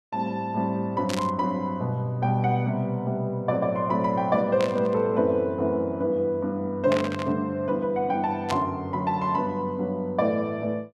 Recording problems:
static burst; 4 times, first at 1 s; peak -1 dB vs average level

